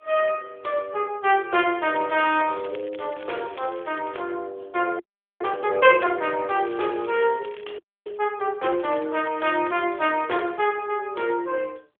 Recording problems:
telephone audio; 320 Hz to 3.4 kHz, AMR-NB
crackle; from 2 to 4 s, from 6.5 to 7.5 s and from 9 to 10 s; loose cable, SNR 22 dB
audio freezing; at 5 s and at 8 s

